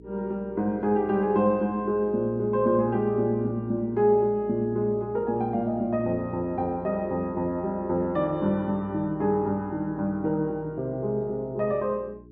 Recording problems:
hum; 60 Hz, harmonics up to 420 Hz, SNR 21 dB

